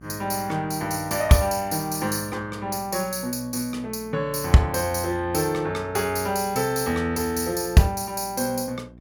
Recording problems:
hum; 60 Hz, harmonics up to 720 Hz, SNR 22 dB

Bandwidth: 18.5 kHz